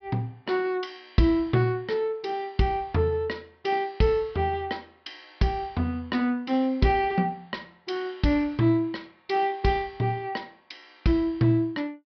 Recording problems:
treble cut off; nothing above 5.5 kHz

